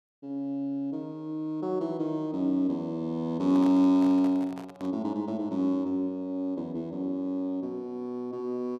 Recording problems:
handling noise; from 3.5 to 5 s; peak -11 dB vs average level

